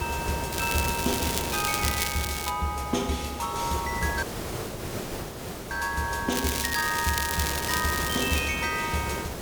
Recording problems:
background hiss; slope -5 dB per octave, SNR 5 dB
crackling; from 0.5 to 2.5 s and from 6.5 to 8.5 s; loose cable, SNR 2 dB
dropout; at 4 s for 1.5 s

